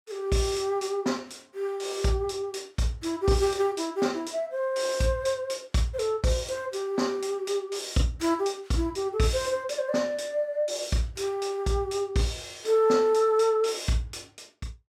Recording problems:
none

